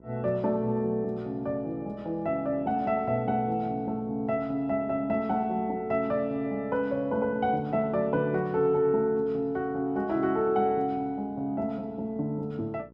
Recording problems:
hum; 60 Hz, harmonics up to 1.1 kHz, SNR 24 dB

